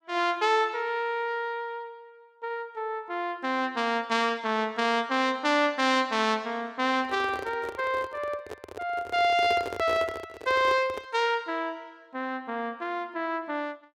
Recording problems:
handling noise; from 7 to 11 s; peak -3 dB vs average level

